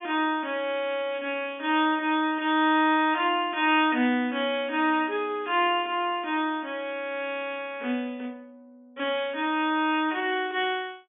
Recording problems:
low-pass filter; nothing above 3.6 kHz

